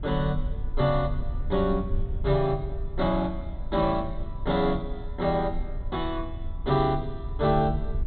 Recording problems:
treble missing; nothing above 4 kHz
low-frequency rumble; below 66 Hz, SNR 8 dB

